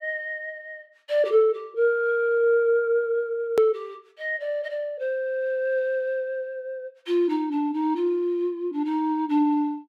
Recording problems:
click at an edit; at 3.5 s

